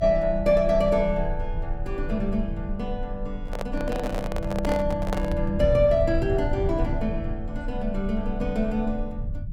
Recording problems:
rumble; below 72 Hz, strongest tone 26 Hz, SNR 7 dB
handling noise; from 3.5 to 5.5 s; peak 0 dB vs average level

